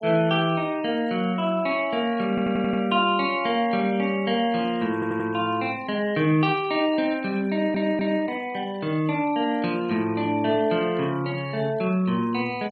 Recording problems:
noise reduction artefacts; signal-to-artefact ratio 25 dB
stutter; at 2.5 s, at 5 s and at 7.5 s

